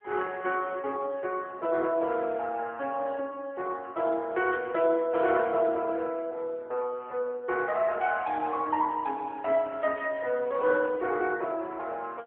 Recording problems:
telephone audio; 320 Hz to 3.4 kHz, AMR-NB
burst of static; at 4.5 s; peak -12 dB vs average level

